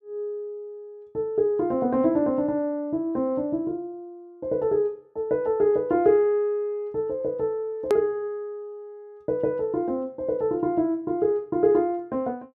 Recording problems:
click at an edit; at 8 s

